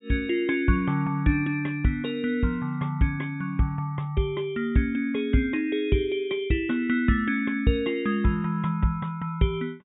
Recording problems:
treble cut off; nothing above 4 kHz

